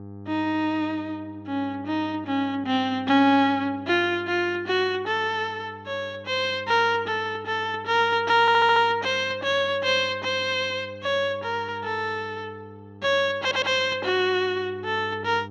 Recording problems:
hum; 50 Hz, harmonics up to 900 Hz, SNR 20 dB
stutter; at 8.5 s and at 13 s

